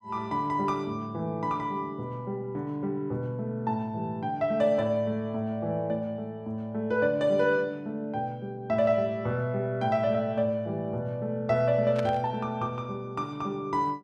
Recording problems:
burst of static; at 12 s; peak -6 dB vs average level

